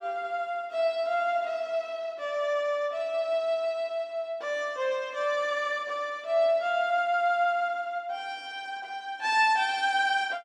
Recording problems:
none

